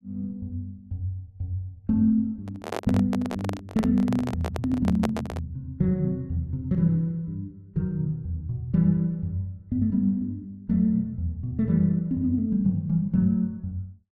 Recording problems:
handling noise; from 2.5 to 5.5 s; peak +2 dB vs average level

